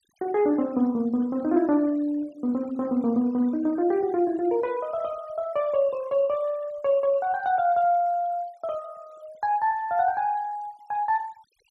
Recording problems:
noise reduction artefacts; signal-to-artefact ratio 27 dB

